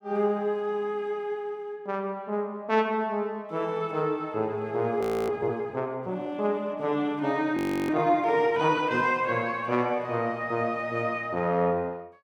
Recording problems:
frozen audio; at 5 s and at 7.5 s

